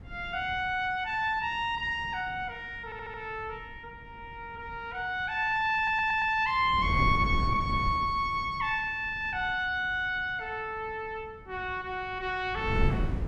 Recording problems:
wind on the microphone; below 180 Hz, SNR 6 dB
stutter; at 3 s and at 6 s

